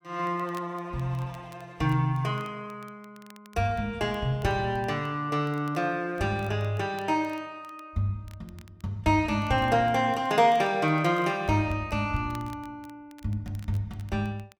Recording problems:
crackle; vinyl, SNR 29 dB

